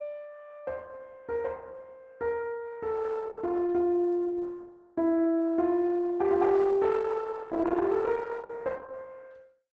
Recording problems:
lossy compression; Opus, log-spectral distance 3 dB, nothing above 7.6 kHz

